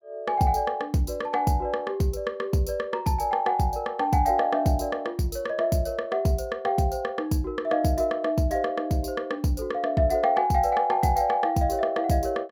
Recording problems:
none

